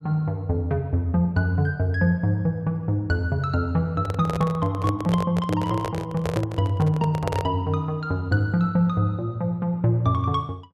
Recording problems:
microphone handling noise; from 4 to 7.5 s; peak 0 dB vs average level

